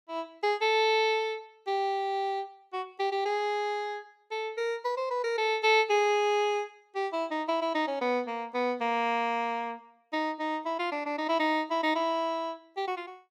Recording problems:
none

